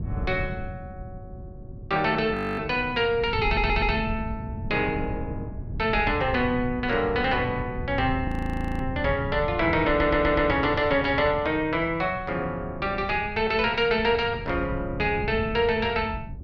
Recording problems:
wind on the microphone; below 150 Hz, SNR 10 dB
frozen audio; at 2.5 s and at 8.5 s for 0.5 s
stutter; at 3.5 s and at 10 s

